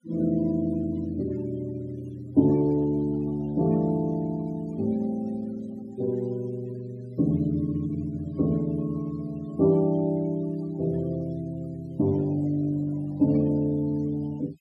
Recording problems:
denoising artefacts; signal-to-artefact ratio 24 dB

